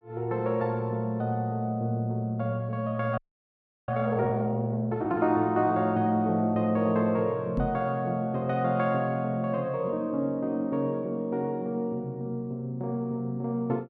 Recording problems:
frozen audio; at 3 s for 0.5 s
knock on the microphone; at 7.5 s; peak +2 dB vs average level

